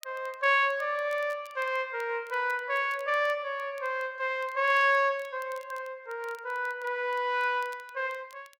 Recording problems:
crackling; vinyl, SNR 28 dB

